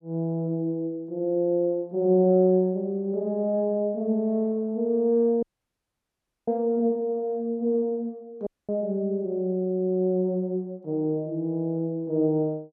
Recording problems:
dropout; at 5.5 s for 1 s and at 8.5 s

